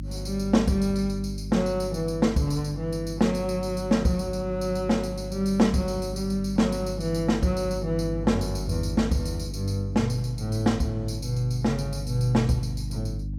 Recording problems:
mains hum; 50 Hz, harmonics up to 300 Hz, SNR 9 dB

